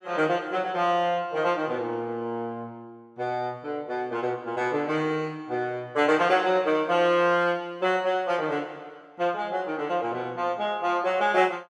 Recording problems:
none

